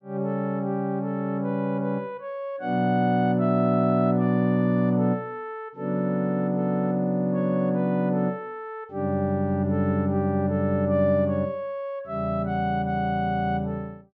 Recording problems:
treble missing; nothing above 8 kHz

